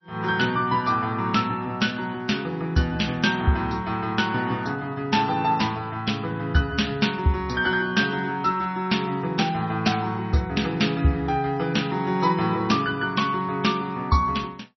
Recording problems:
lossy codec; MP3, log-spectral distance 3 dB, nothing above 5.8 kHz

